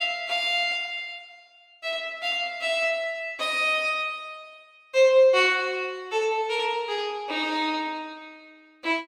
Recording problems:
none

